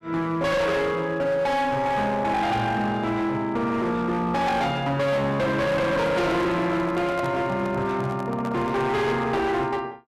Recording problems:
distorted audio; hard clipping, uneven, signal-to-distortion ratio 7 dB
handling noise; from 5.5 to 9 s; peak -5 dB vs average level

